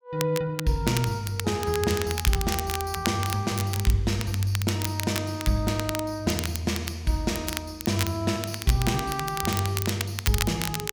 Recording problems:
crackle; vinyl, SNR 7 dB

